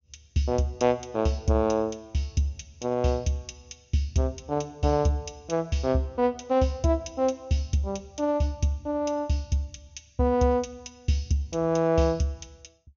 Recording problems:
treble missing; nothing above 6.7 kHz

